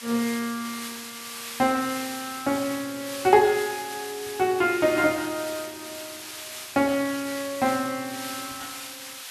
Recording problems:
hiss; SNR 10 dB

